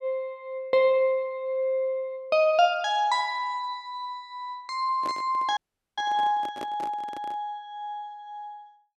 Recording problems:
handling noise; from 5 to 7.5 s; peak -6 dB vs average level
dropout; at 5.5 s

